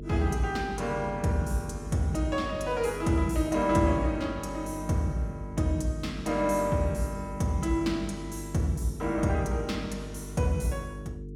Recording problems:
hum; 50 Hz, harmonics up to 450 Hz, SNR 11 dB

